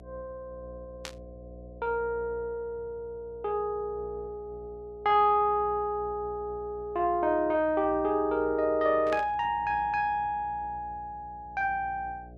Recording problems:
hum; 60 Hz, harmonics up to 720 Hz, SNR 21 dB
burst of static; at 1 s and at 9 s; peak -5 dB vs average level

